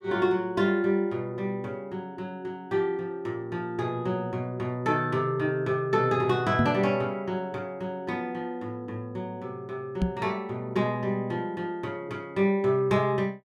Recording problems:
microphone thump; at 6.5 s and at 10 s; peak +7 dB vs average level

